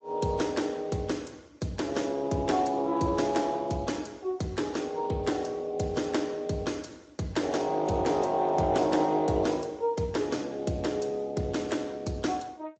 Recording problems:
codec artefacts; Speex, then MP3, log-spectral distance 4 dB, nothing above 7.8 kHz

